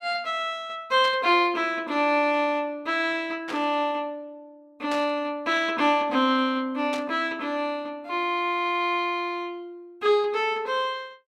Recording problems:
static burst; 4 times, first at 1 s; peak -6 dB vs average level

